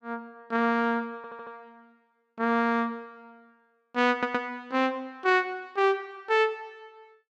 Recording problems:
stutter; at 1 s and at 4 s

